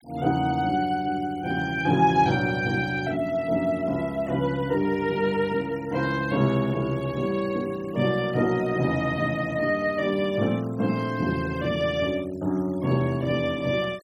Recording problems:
denoising artefacts; signal-to-artefact ratio 24 dB

